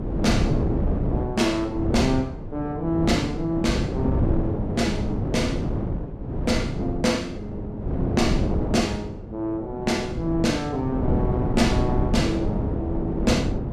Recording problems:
wind on the microphone; below 300 Hz, SNR 1 dB

